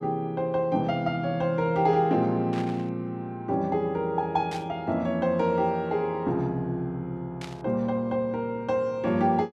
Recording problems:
burst of static; at 2.5 s, at 4.5 s and at 7.5 s; peak -9 dB vs average level

